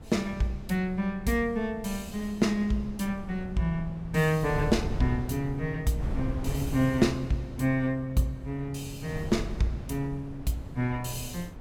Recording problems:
wind on the microphone; below 150 Hz, SNR 10 dB

